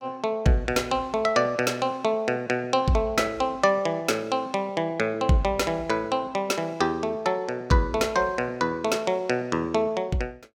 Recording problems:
none

